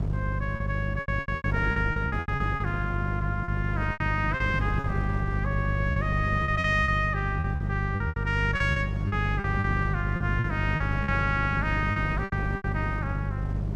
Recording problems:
hum; 50 Hz, harmonics up to 400 Hz, SNR 0 dB
wind on the microphone; below 310 Hz, SNR 8 dB
packet loss; 12% of the sound replaced, filled with repeated pitch periods

